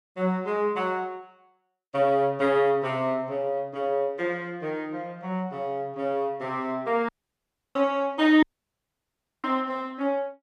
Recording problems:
dropout; at 7 s for 0.5 s and at 8.5 s for 1 s

